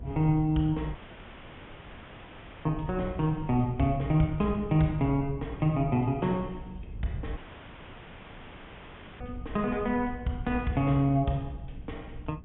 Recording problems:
treble missing; nothing above 3.5 kHz
hum; 60 Hz, harmonics up to 300 Hz, SNR 21 dB
low-frequency rumble; below 100 Hz, SNR 15 dB
dropout; at 1 s for 1.5 s and at 7.5 s for 2 s

